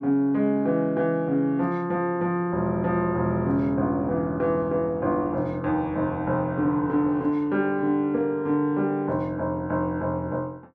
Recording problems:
none

